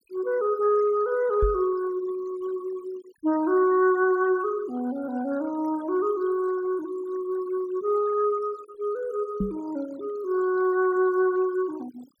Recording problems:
noise reduction artefacts; signal-to-artefact ratio 22 dB
microphone bump; at 1.5 s and at 9.5 s; peak +2 dB vs average level

